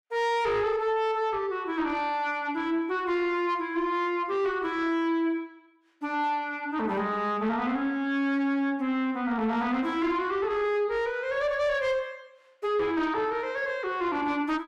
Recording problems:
distorted audio; soft clipping, signal-to-distortion ratio 10 dB

